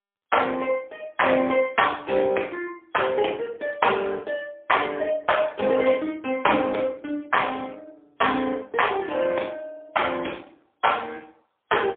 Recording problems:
telephone audio; 280 Hz to 3.4 kHz, AMR-NB, then MP3

